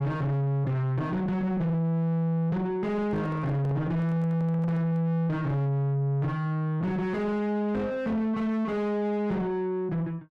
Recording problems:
distorted audio; soft clipping, signal-to-distortion ratio 7 dB
microphone handling noise; from 3 to 5 s; peak -4 dB vs average level

